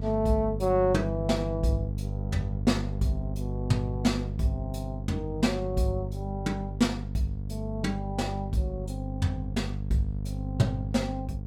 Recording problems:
hum; 50 Hz, harmonics up to 500 Hz, SNR 4 dB

